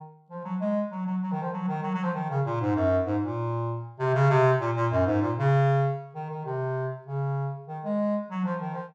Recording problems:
none

